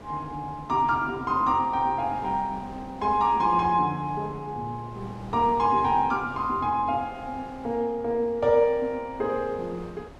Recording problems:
wind on the microphone; below 780 Hz, SNR 19 dB

